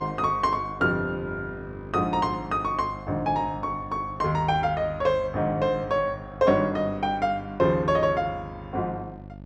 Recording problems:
hum; 50 Hz, harmonics up to 900 Hz, SNR 16 dB

